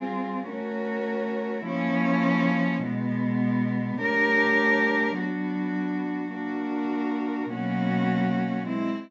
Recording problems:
treble missing; nothing above 8 kHz

